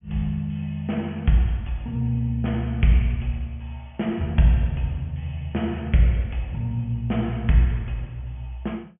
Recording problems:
low-pass filter; nothing above 3.2 kHz

